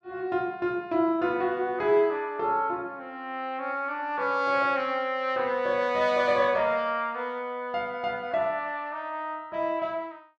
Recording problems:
none

